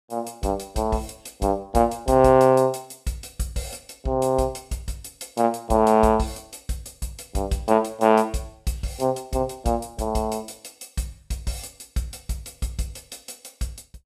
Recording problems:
none

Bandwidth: 15 kHz